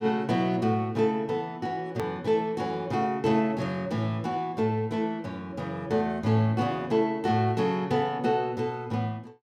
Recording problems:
click at an edit; at 2 s

